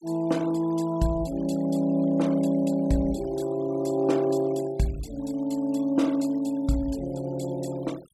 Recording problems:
noise reduction artefacts; signal-to-artefact ratio 23 dB

